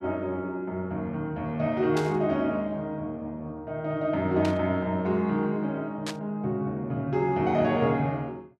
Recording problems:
burst of static; at 2 s, at 4.5 s and at 6 s; peak -3 dB vs average level

